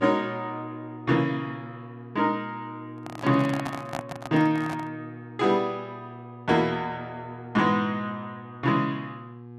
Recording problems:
hum; 60 Hz, harmonics up to 1.2 kHz, SNR 16 dB
microphone handling noise; from 3 to 5 s; peak -1 dB vs average level

